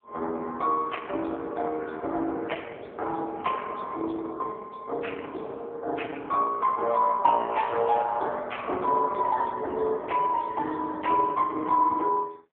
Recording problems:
phone line; 280 Hz to 3.5 kHz, AMR-NB

